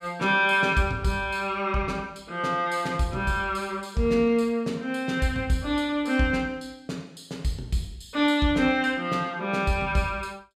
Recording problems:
none

